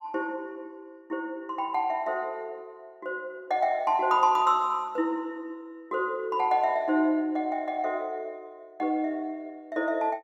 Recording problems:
none

